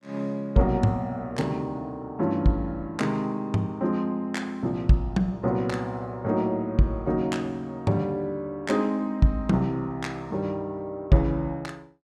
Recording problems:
none

